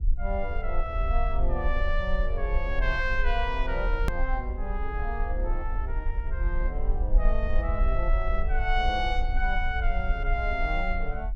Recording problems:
low-frequency rumble; below 48 Hz, SNR -1 dB
edit click; at 4 s

